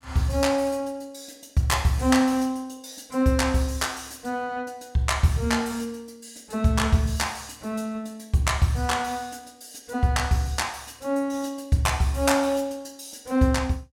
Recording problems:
none

